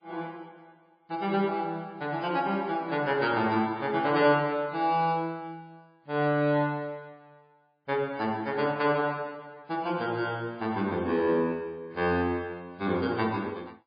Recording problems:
lossy codec; MP3, log-spectral distance 2 dB, nothing above 4.4 kHz

